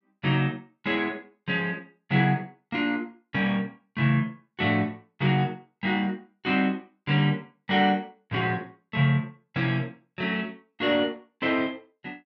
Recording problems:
none

